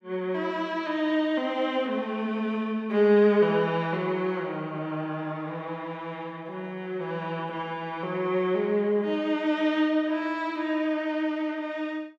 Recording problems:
none

